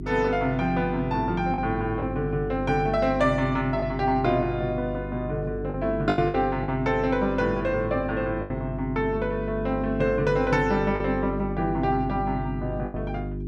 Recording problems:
electrical hum; 50 Hz, harmonics up to 400 Hz, SNR 8 dB
lost packets; 4% of the sound replaced, filled with the last packet

